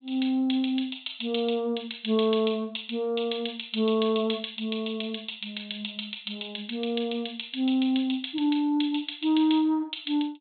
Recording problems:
low-pass filter; nothing above 4 kHz

